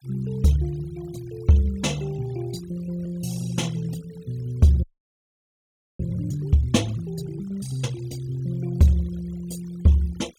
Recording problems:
denoising artefacts; signal-to-artefact ratio 23 dB
frozen audio; at 5 s for 1 s

